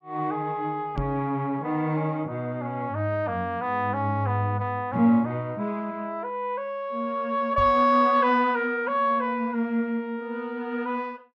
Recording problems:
microphone bump; at 1 s and at 7.5 s; peak -3 dB vs average level

